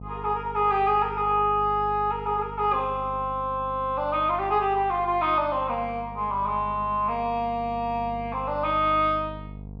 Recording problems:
hum; 50 Hz, harmonics up to 700 Hz, SNR 16 dB

